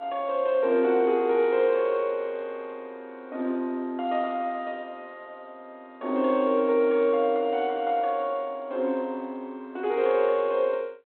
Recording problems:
telephone audio; 280 Hz to 4 kHz, G.726

